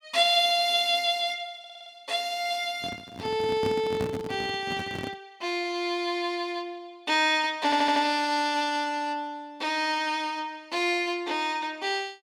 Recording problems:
audio stuttering; at 1.5 s and at 7.5 s
microphone handling noise; from 3 to 5 s; peak -2 dB vs average level

